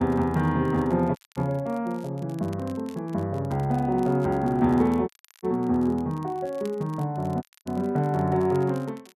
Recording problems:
crackle; vinyl, SNR 28 dB
dropout; at 1 s, at 5 s and at 7.5 s

